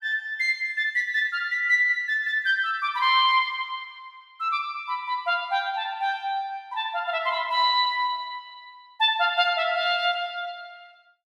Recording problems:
none

